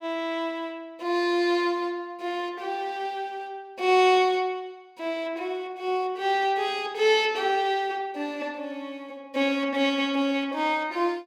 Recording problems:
none

